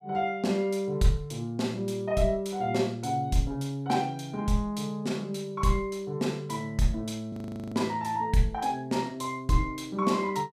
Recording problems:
audio freezing; at 7.5 s

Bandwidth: 14.5 kHz